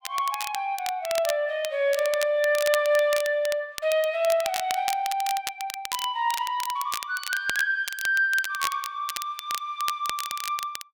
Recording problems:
crackle; vinyl, SNR 9 dB

